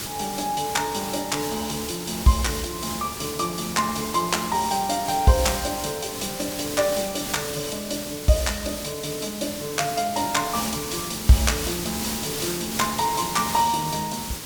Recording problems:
background hiss; SNR 6 dB

